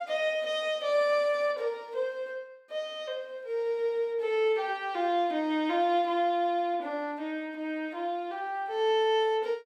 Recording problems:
none

